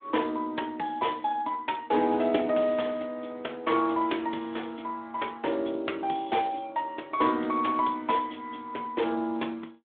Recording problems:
phone line; 240 Hz to 3.6 kHz, Speex

